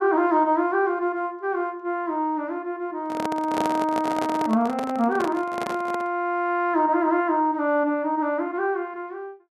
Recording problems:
handling noise; from 3 to 6 s; peak 0 dB vs average level

